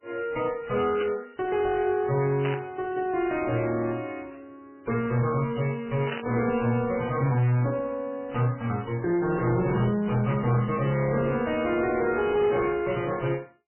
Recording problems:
lossy compression; MP3, log-spectral distance 4 dB, nothing above 2.5 kHz
distorted audio; soft clipping, signal-to-distortion ratio 10 dB
static burst; 4 times, first at 1 s; peak -2 dB vs average level

